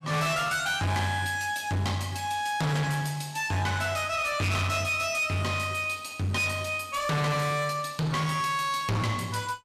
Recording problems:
distorted audio; hard clipping, uneven, signal-to-distortion ratio 6 dB

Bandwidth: 14 kHz